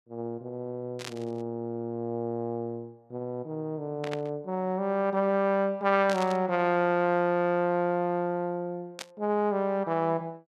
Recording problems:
burst of static; 4 times, first at 1 s; peak -5 dB vs average level

